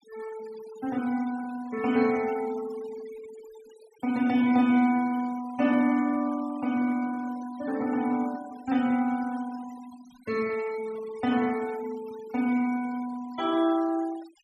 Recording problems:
denoising artefacts; signal-to-artefact ratio 18 dB

